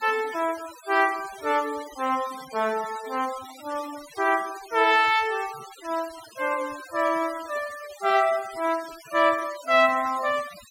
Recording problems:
noise reduction artefacts; signal-to-artefact ratio 17 dB

